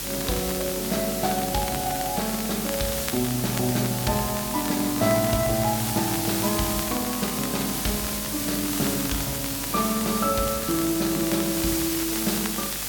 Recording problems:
hum; 50 Hz, harmonics up to 450 Hz, SNR 16 dB
background hiss; slope 0 dB per octave, SNR 1 dB
crackling; vinyl, SNR 12 dB

